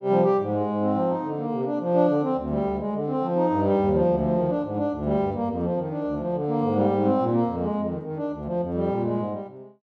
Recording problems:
none

